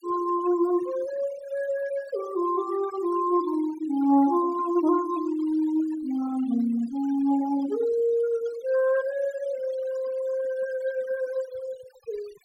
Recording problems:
noise reduction artefacts; signal-to-artefact ratio 19 dB

